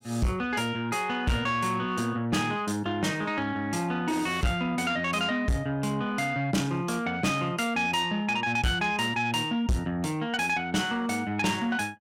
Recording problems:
distorted audio; soft clipping, signal-to-distortion ratio 8 dB

